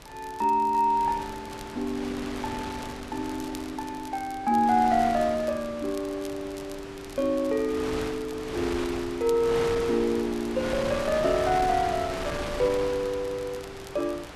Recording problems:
wind on the microphone; below 2.2 kHz, SNR 10 dB
crackle; vinyl, SNR 23 dB

